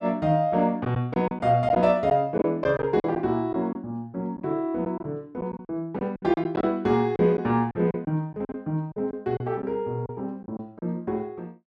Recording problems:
lost packets; 8% of the sound replaced, filled with silence

